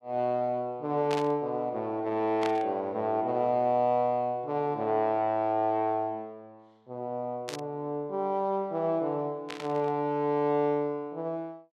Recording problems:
static burst; 4 times, first at 1 s; peak -3 dB vs average level

